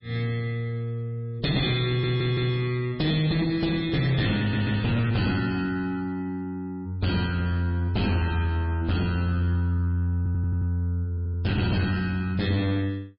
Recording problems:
lossy codec; MP3, log-spectral distance 2 dB, nothing above 4.5 kHz
distorted audio; soft clipping, signal-to-distortion ratio 11 dB
audio stuttering; 4 times, first at 2 s

